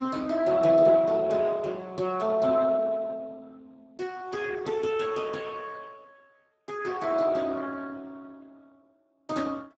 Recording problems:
lossy compression; Speex, log-spectral distance 4 dB

